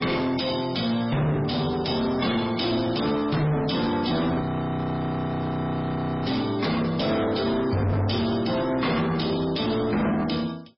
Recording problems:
lossy codec; MP3, log-spectral distance 7 dB, nothing above 5.2 kHz
distorted audio; soft clipping, signal-to-distortion ratio 6 dB
audio freezing; at 4.5 s for 2 s

